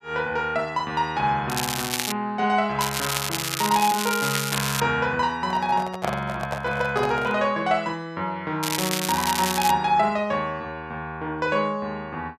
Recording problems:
crackling; at 1.5 s, from 3 to 5 s and from 8.5 to 9.5 s; loose cable, SNR 3 dB
handling noise; from 5.5 to 7.5 s; peak +1 dB vs average level

